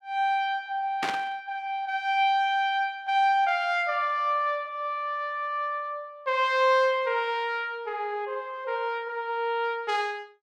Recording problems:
burst of static; at 1 s; peak +1 dB vs average level

